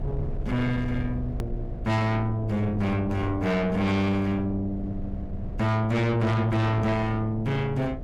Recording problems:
distortion; soft clipping, signal-to-distortion ratio 7 dB
electrical hum; 60 Hz, harmonics up to 720 Hz, SNR 20 dB
low-frequency rumble; below 130 Hz, SNR 11 dB
click at an edit; at 1.5 s

